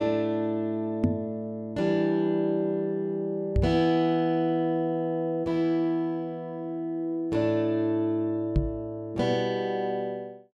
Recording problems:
microphone bump; at 1 s, at 3.5 s and at 8.5 s; peak +8 dB vs average level

